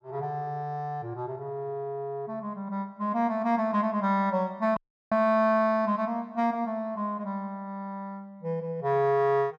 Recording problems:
audio cutting out; at 5 s

